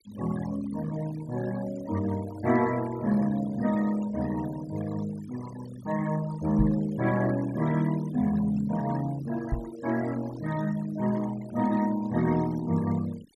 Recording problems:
noise reduction artefacts; signal-to-artefact ratio 17 dB
microphone thump; at 6.5 s and at 9.5 s; peak +5 dB vs average level

